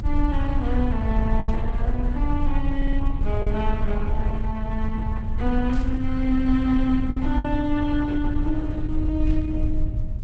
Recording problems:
lossy compression; Opus, log-spectral distance 2 dB, nothing above 8 kHz
rumble; below 66 Hz, strongest tone 20 Hz, SNR 1 dB
packet loss; 3% of the sound replaced, filled with the last packet
static burst; at 1.5 s, at 5.5 s and at 9.5 s; peak -16 dB vs average level
audio stuttering; at 3 s

